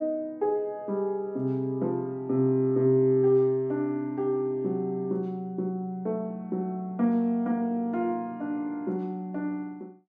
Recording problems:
none

